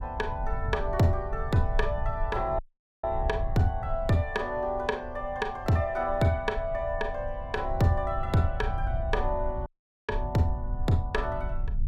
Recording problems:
low-frequency rumble; below 70 Hz, SNR 7 dB
audio cutting out; at 2.5 s and at 9.5 s

